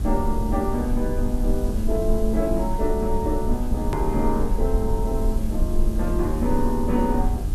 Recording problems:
hum; 50 Hz, harmonics up to 1.7 kHz, SNR 13 dB
hiss; SNR 20 dB
rumble; below 54 Hz, SNR 2 dB
hard cut with a click; at 4 s

